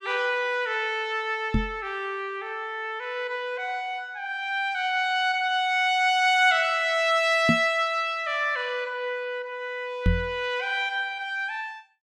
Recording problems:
microphone bump; at 1.5 s, at 7.5 s and at 10 s; peak +6 dB vs average level

